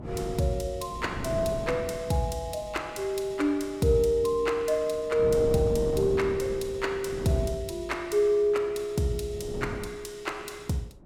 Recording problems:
wind noise; below 360 Hz, SNR 9 dB

